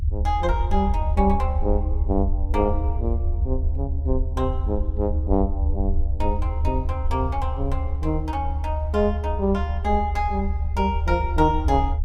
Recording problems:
rumble; below 76 Hz, SNR 0 dB

